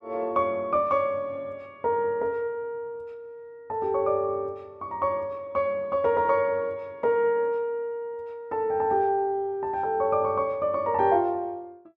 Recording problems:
none

